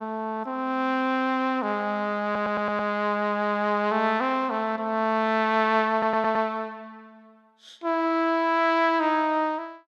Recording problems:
stutter; at 2 s and at 6 s

